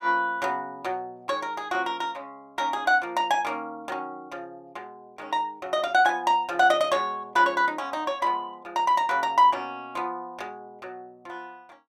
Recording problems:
none

